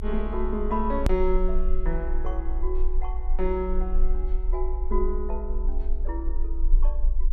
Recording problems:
rumble; below 36 Hz, strongest tone 20 Hz, SNR -2 dB
click at an edit; at 1 s

